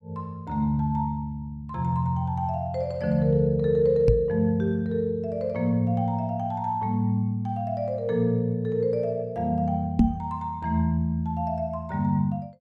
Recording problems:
knock on the microphone; at 4 s and at 10 s; peak +10 dB vs average level

